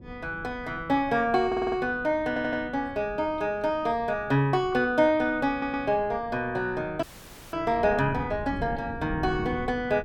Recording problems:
wind noise; below 260 Hz, SNR 15 dB
audio stuttering; at 1.5 s, at 2.5 s and at 5.5 s
frozen audio; at 7 s for 0.5 s

